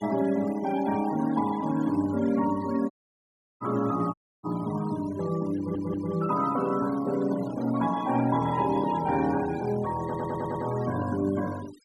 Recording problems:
noise reduction artefacts; signal-to-artefact ratio 17 dB
dropout; at 3 s for 0.5 s and at 4 s
audio stuttering; at 5.5 s and at 10 s

